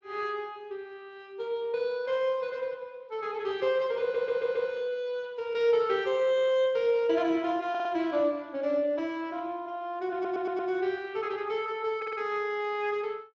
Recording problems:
codec artefacts; Speex, log-spectral distance 2 dB, nothing above 6.7 kHz
stutter; 4 times, first at 4 s

